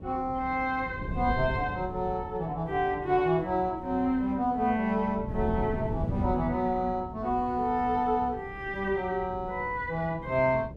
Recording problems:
hum; 60 Hz, harmonics up to 540 Hz, SNR 20 dB
wind on the microphone; below 200 Hz, SNR 11 dB

